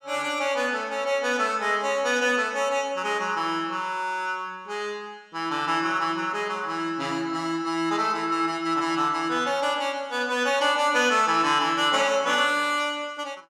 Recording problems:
none

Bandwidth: 14.5 kHz